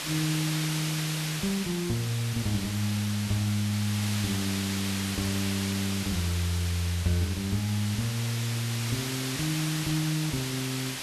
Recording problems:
hiss; slope 0 dB per octave, SNR 4 dB

